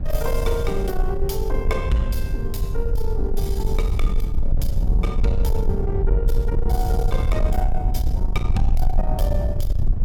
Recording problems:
distorted audio; soft clipping, signal-to-distortion ratio 11 dB
rumble; below 62 Hz, SNR -3 dB

